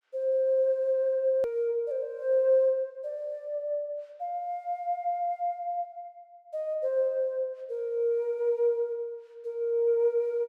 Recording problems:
hard cut with a click; at 1.5 s

